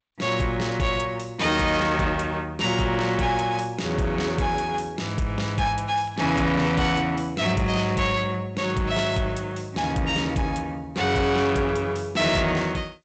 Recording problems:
codec artefacts; G.722, log-spectral distance 3 dB, nothing above 8 kHz
distortion; soft clipping, signal-to-distortion ratio 12 dB
crackling; at 6 s; loose cable, SNR 28 dB

